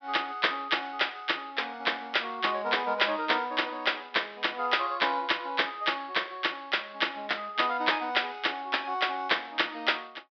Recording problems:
treble cut off; nothing above 5.5 kHz

